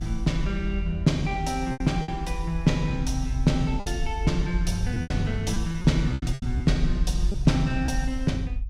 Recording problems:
low-frequency rumble; below 56 Hz, strongest tone 46 Hz, SNR 5 dB
lost packets; 7% of the sound replaced, filled with repeated pitch periods

